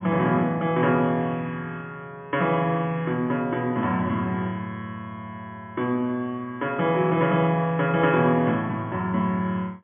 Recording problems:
treble cut off; nothing above 3.4 kHz

